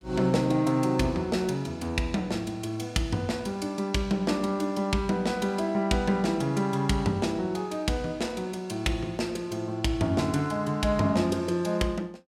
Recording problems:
none

